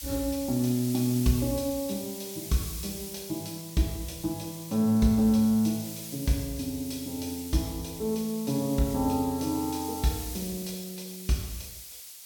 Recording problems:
hiss; SNR 11 dB

